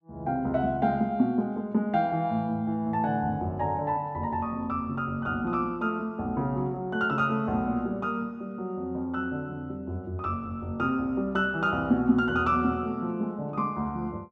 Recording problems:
none

